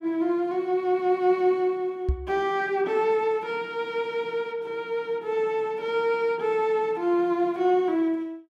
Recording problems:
microphone bump; at 2 s; peak +3 dB vs average level

